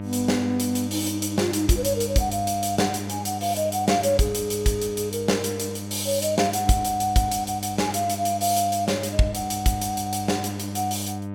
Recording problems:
hum; 50 Hz, harmonics up to 1.3 kHz, SNR 9 dB

